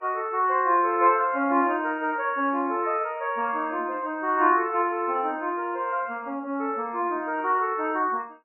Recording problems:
lossy compression; MP3, log-spectral distance 2 dB, nothing above 2.4 kHz

